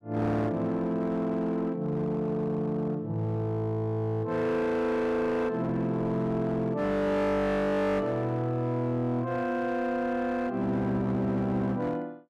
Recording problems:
distortion; hard clipping, signal-to-distortion ratio 11 dB

